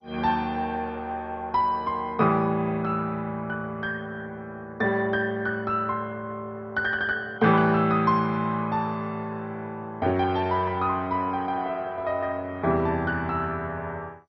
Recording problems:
lossy compression; MP2, log-spectral distance 2 dB, nothing above 5 kHz

